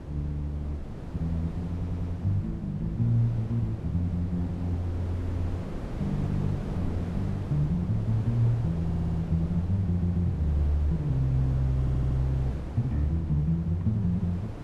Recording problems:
wind on the microphone; below 290 Hz, SNR 9 dB
stutter; 4 times, first at 1.5 s

